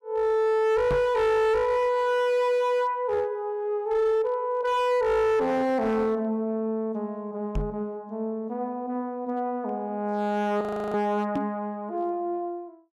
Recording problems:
distorted audio; hard clipping, uneven, signal-to-distortion ratio 11 dB
microphone bump; at 1 s, at 7.5 s and at 11 s; peak +2 dB vs average level
audio freezing; at 11 s

